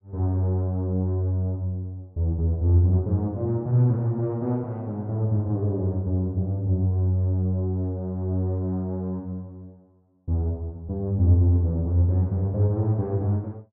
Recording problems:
none

